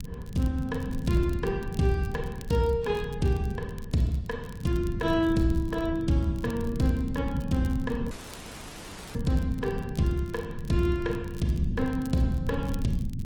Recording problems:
codec artefacts; AAC, then Opus, log-spectral distance 2 dB
rumble; below 190 Hz, SNR 6 dB
crackling; vinyl, SNR 24 dB
audio cutting out; at 8 s for 1 s

